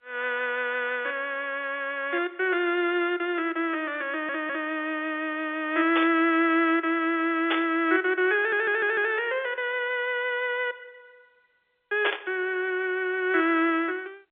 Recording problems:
phone line; 280 Hz to 3.6 kHz, G.711
audio stuttering; at 4 s and at 8.5 s
burst of static; at 6 s, at 7.5 s and at 12 s; peak +3 dB vs average level

